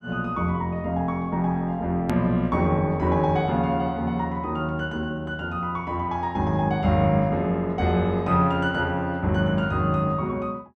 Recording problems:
click at an edit; at 2 s

